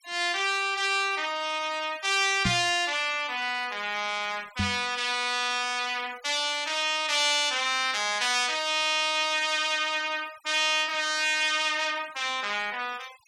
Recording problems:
noise reduction artefacts; signal-to-artefact ratio 22 dB
microphone thump; at 2.5 s and at 4.5 s; peak +1 dB vs average level

